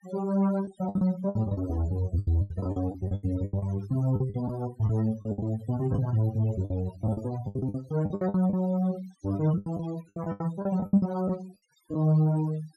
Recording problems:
noise reduction artefacts; signal-to-artefact ratio 19 dB
lost packets; 15% of the sound replaced, filled with the last packet

